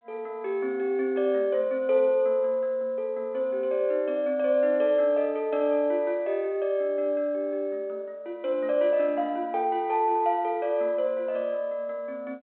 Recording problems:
telephone audio; 300 Hz to 3.5 kHz, G.726

